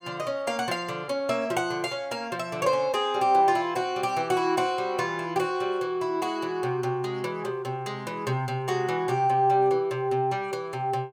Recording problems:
none

